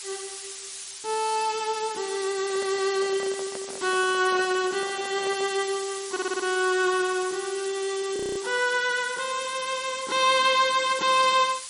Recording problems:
lossy codec; MP3, log-spectral distance 15 dB, nothing above 9 kHz
hiss; slope +5 dB per octave, SNR 10 dB
handling noise; from 2.5 to 5.5 s; peak -10 dB vs average level
audio stuttering; at 6 s
frozen audio; at 8 s

